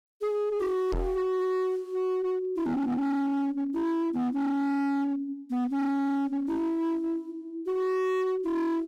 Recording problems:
distorted audio; hard clipping, uneven, signal-to-distortion ratio 7 dB
knock on the microphone; at 1 s; peak +1 dB vs average level

